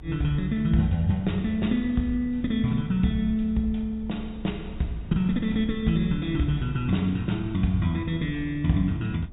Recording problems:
treble missing; nothing above 4 kHz
low-frequency rumble; below 72 Hz, SNR 16 dB

